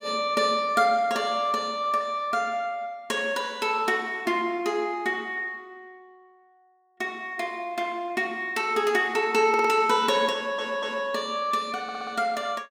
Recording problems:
audio stuttering; at 9.5 s, at 10 s and at 12 s

